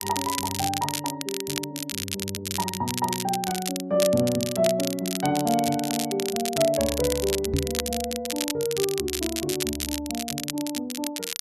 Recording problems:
crackle; vinyl, SNR 3 dB
microphone thump; at 7.5 s; peak +6 dB vs average level

